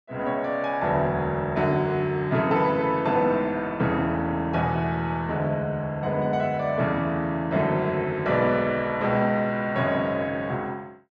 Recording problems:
none

